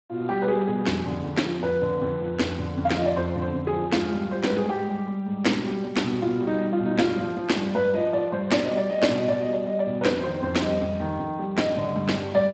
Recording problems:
lossy codec; Speex, log-spectral distance 3 dB, nothing above 7.8 kHz

